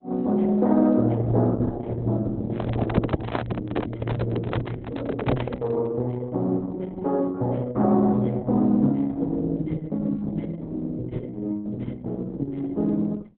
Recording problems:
codec artefacts; Opus, log-spectral distance 3 dB, nothing above 3.8 kHz
handling noise; from 2.5 to 6 s; peak +5 dB vs average level

